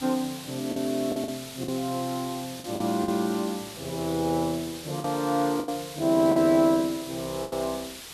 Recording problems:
background hiss; slope +1 dB per octave, SNR 12 dB
lost packets; 7% of the sound replaced, filled with the last packet

